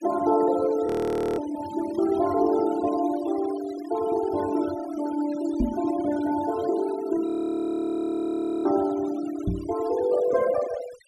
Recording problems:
noise reduction artefacts; signal-to-artefact ratio 16 dB
frozen audio; at 1 s for 0.5 s and at 7.5 s for 1.5 s
microphone bump; at 5.5 s and at 9.5 s; peak +4 dB vs average level

